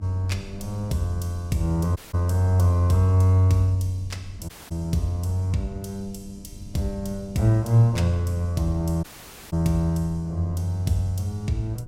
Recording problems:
electrical hum; 50 Hz, harmonics up to 1 kHz, SNR 25 dB
low-frequency rumble; below 120 Hz, SNR 21 dB
audio cutting out; at 2 s, at 4.5 s and at 9 s

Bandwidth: 16 kHz